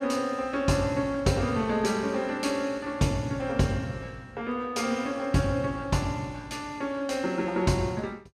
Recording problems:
none

